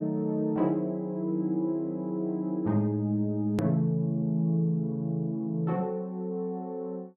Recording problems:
click at an edit; at 3.5 s

